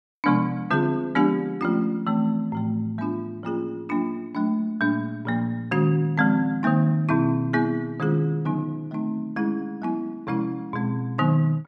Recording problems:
none

